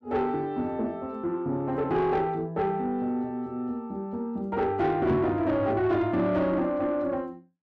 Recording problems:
distortion; soft clipping, signal-to-distortion ratio 12 dB
microphone bump; at 5 s; peak +5 dB vs average level

